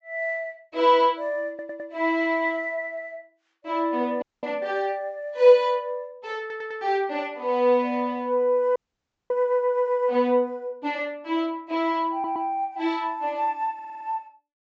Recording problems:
low-pass filter; nothing above 8 kHz
stutter; 4 times, first at 1.5 s
audio freezing; at 4 s and at 9 s for 0.5 s

